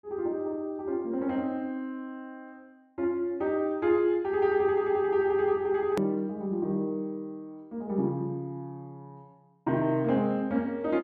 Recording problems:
edit click; at 6 s

